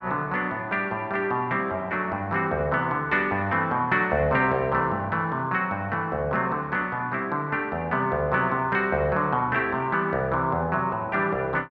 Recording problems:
none

